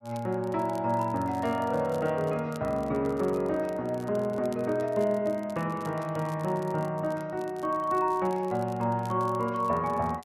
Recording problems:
crackle; vinyl, SNR 26 dB

